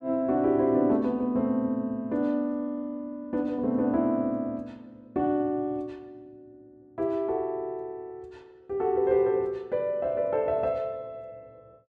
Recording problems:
none

